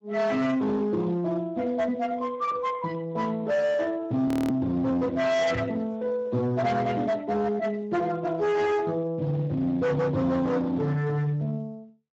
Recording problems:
lossy compression; Speex, log-spectral distance 2 dB, nothing above 17.1 kHz
distorted audio; hard clipping, signal-to-distortion ratio 8 dB
audio freezing; at 4.5 s
microphone bump; at 5.5 s; peak -1 dB vs average level

